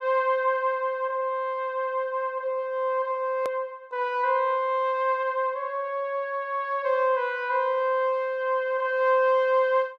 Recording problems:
hard cut with a click; at 3.5 s

